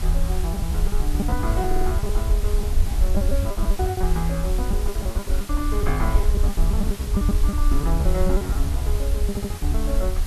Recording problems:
hiss; slope -2 dB per octave, SNR 7 dB
low-frequency rumble; below 64 Hz, SNR -5 dB
packet loss; 18% of the sound replaced, filled with repeated pitch periods
stutter; at 1.5 s and at 9.5 s

